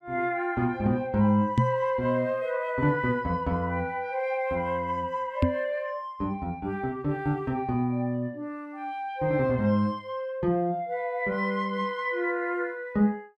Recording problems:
microphone bump; at 1.5 s and at 5.5 s; peak +8 dB vs average level

